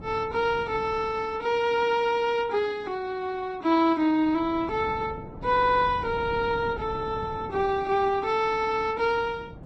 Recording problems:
lossy compression; Vorbis, log-spectral distance 2 dB
wind noise; below 350 Hz, SNR 17 dB
stutter; at 5.5 s

